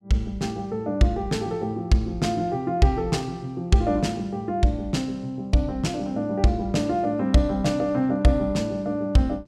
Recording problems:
none

